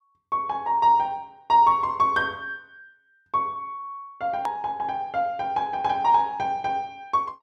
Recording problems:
click at an edit; at 4.5 s

